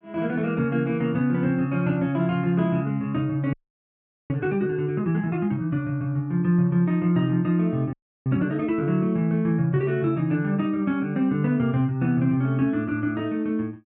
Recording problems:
audio freezing; at 3.5 s for 1 s and at 8 s

